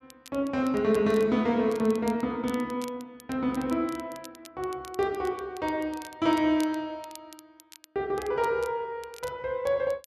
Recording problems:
crackle; vinyl, SNR 21 dB

